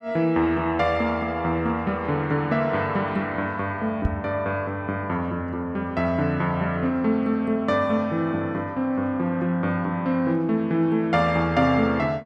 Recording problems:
microphone thump; at 4 s; peak +4 dB vs average level

